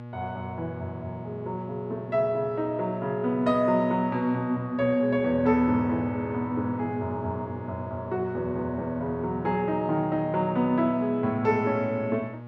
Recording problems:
hum; 60 Hz, harmonics up to 1.4 kHz, SNR 13 dB

